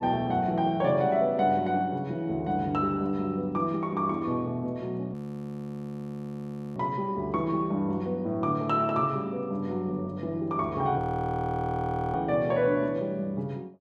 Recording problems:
frozen audio; at 5 s for 1.5 s and at 11 s for 1 s

